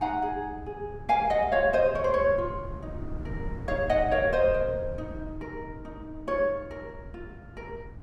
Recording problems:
wind on the microphone; below 160 Hz, SNR 15 dB

